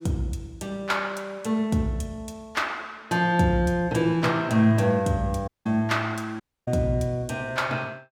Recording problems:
audio cutting out; at 5.5 s and at 6.5 s

